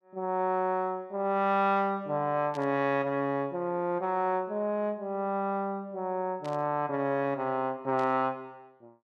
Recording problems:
static burst; at 2.5 s, at 6.5 s and at 8 s; peak -13 dB vs average level

